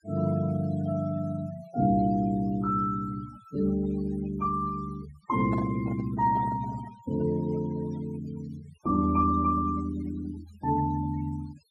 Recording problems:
denoising artefacts; signal-to-artefact ratio 20 dB
microphone handling noise; from 5.5 to 7 s; peak -5 dB vs average level

